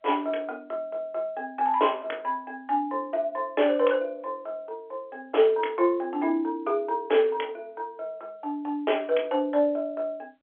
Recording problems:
telephone audio; 300 Hz to 3.4 kHz, G.711

